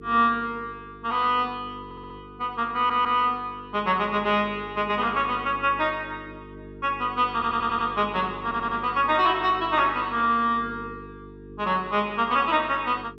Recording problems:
mains hum; 50 Hz, harmonics up to 450 Hz, SNR 19 dB
audio stuttering; 4 times, first at 2 s

